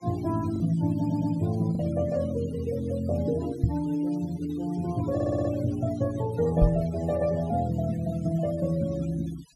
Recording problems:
denoising artefacts; signal-to-artefact ratio 20 dB
packet loss; 0.9% of the sound replaced, filled with the last packet
stutter; at 1 s and at 5 s
knock on the microphone; at 3.5 s and at 6.5 s; peak +9 dB vs average level

